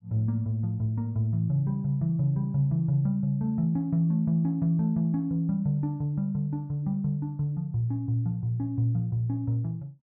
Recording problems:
none

